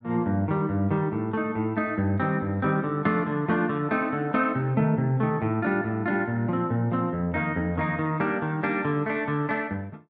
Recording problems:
none

